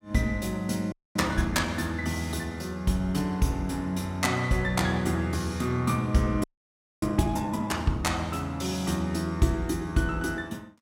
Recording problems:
frozen audio; at 1 s and at 6.5 s for 0.5 s

